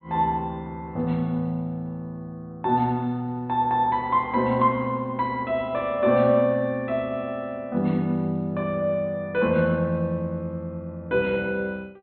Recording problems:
treble missing; nothing above 4.1 kHz

